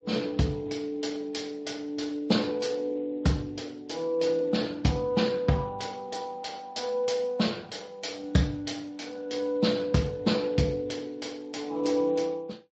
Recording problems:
lossy codec; Speex, then MP3, log-spectral distance 4 dB, nothing above 7.6 kHz

